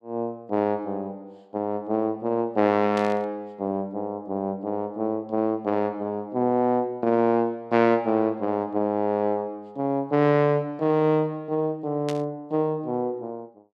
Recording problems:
burst of static; at 3 s and at 12 s; peak -7 dB vs average level

